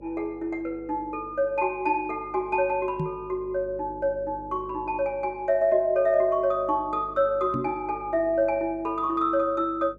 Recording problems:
hum; 50 Hz, harmonics up to 600 Hz, SNR 22 dB
microphone thump; at 3 s and at 7.5 s; peak -1 dB vs average level

